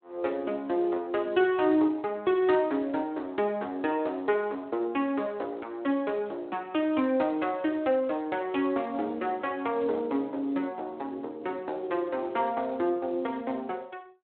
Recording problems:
phone line; 240 Hz to 3.7 kHz, Speex

